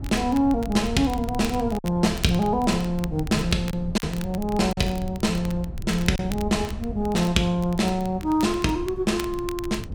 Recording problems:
wind on the microphone; below 120 Hz, SNR 12 dB
crackle; vinyl, SNR 19 dB
packet loss; 1.9% of the sound replaced, filled with silence

